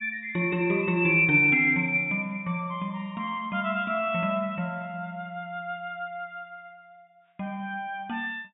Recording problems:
treble cut off; nothing above 4 kHz

